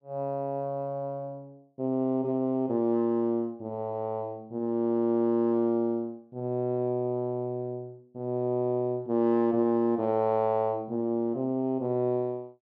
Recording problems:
none

